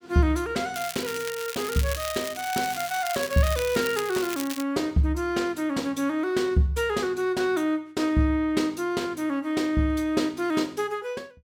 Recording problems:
crackling; from 0.5 to 4.5 s; loose cable, SNR 9 dB

